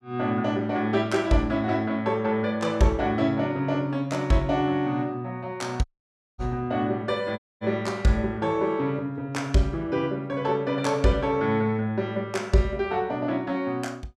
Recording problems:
audio cutting out; at 6 s for 0.5 s and at 7.5 s

